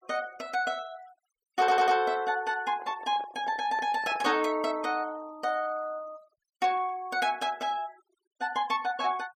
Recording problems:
noise reduction artefacts; signal-to-artefact ratio 24 dB
audio stuttering; at 1.5 s
microphone handling noise; from 2.5 to 4.5 s; peak -10 dB vs average level

